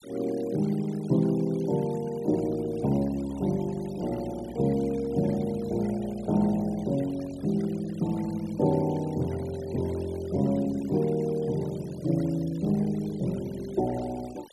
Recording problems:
noise reduction artefacts; signal-to-artefact ratio 22 dB

